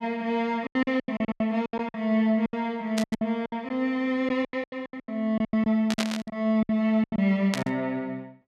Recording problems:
packet loss; 18% of the sound replaced, filled with silence
static burst; at 3 s, at 6 s and at 7.5 s; peak +2 dB vs average level

